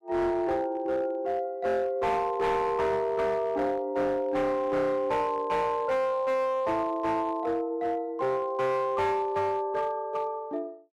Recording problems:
distorted audio; hard clipping, signal-to-distortion ratio 12 dB

